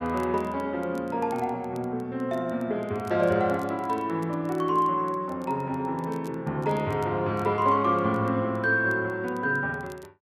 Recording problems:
crackling; vinyl, SNR 30 dB

